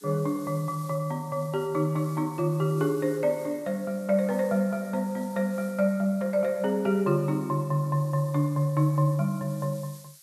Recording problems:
background hiss; SNR 23 dB

